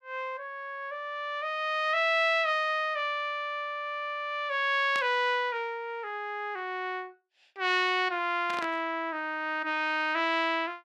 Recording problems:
burst of static; at 5 s and at 8.5 s; peak -6 dB vs average level

